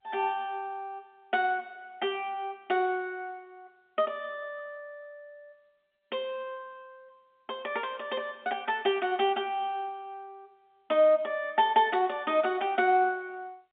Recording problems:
phone line; 190 Hz to 3.7 kHz, G.711

